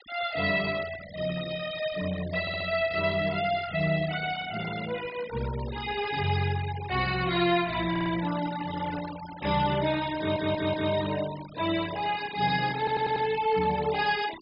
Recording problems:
low-pass filter; nothing above 5.5 kHz
noise reduction artefacts; signal-to-artefact ratio 14 dB
stutter; 4 times, first at 2.5 s

